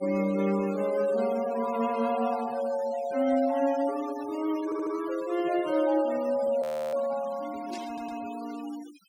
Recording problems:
noise reduction artefacts; signal-to-artefact ratio 18 dB
audio stuttering; at 4.5 s and at 8 s
frozen audio; at 6.5 s
burst of static; at 7.5 s; peak -13 dB vs average level

